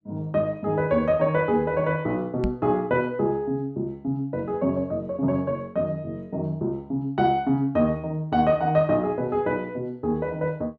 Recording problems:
microphone bump; at 2.5 s; peak +1 dB vs average level

